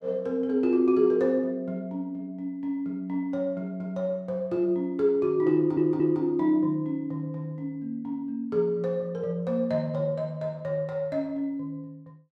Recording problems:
stutter; at 5.5 s

